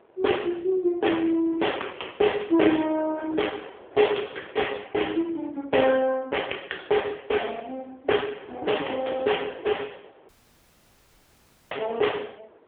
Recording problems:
phone line; 300 Hz to 3.4 kHz, AMR-NB
wind on the microphone; below 780 Hz, SNR 21 dB
dropout; at 10 s for 1.5 s

